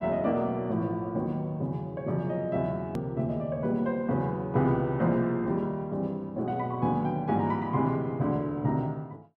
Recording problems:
hard cut with a click; at 3 s

